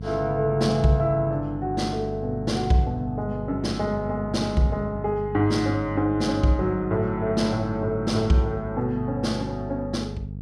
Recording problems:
electrical hum; 50 Hz, harmonics up to 500 Hz, SNR 10 dB

